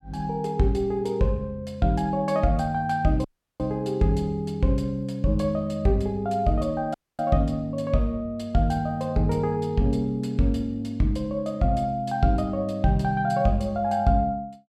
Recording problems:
audio cutting out; at 3 s and at 7 s

